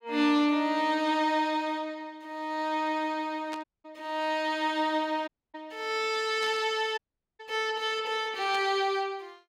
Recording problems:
burst of static; at 3.5 s, at 6.5 s and at 8.5 s; peak -8 dB vs average level
audio cutting out; at 3.5 s, at 5.5 s and at 7 s

